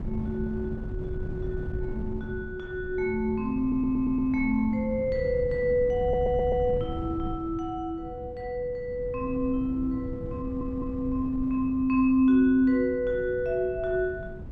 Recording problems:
wind on the microphone; below 160 Hz, SNR 11 dB
audio stuttering; at 3.5 s, at 6 s and at 10 s

